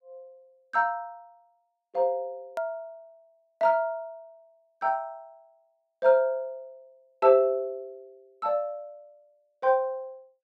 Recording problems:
click at an edit; at 2.5 s

